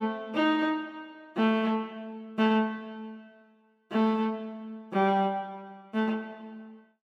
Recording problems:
none

